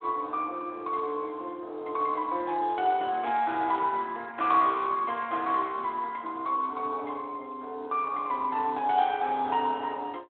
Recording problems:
telephone audio; 240 Hz to 3.8 kHz, Speex

